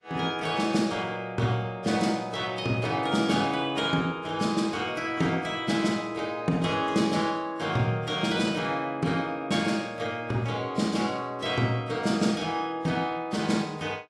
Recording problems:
lossy codec; AAC, log-spectral distance 2 dB

